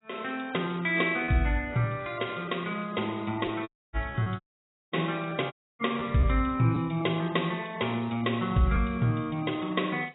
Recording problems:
lossy codec; AAC, log-spectral distance 7 dB, nothing above 3.8 kHz
packet loss; 4% of the sound replaced, filled with repeated pitch periods
audio cutting out; at 3.5 s, at 4.5 s for 0.5 s and at 5.5 s

